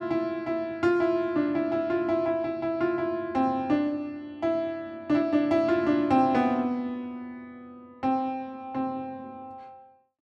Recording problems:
none

